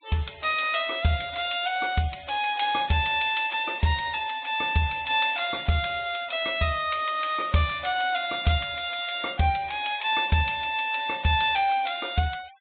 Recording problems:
treble missing; nothing above 4 kHz
noise reduction artefacts; signal-to-artefact ratio 23 dB

